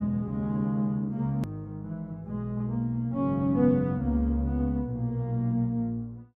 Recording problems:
hard cut with a click; at 1.5 s

